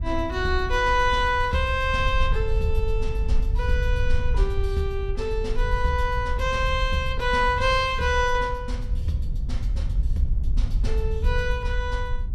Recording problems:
wind noise; below 64 Hz, SNR 3 dB

